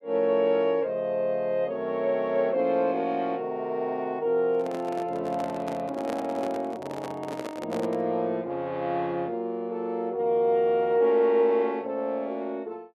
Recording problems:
microphone handling noise; from 4.5 to 8 s; peak -5 dB vs average level

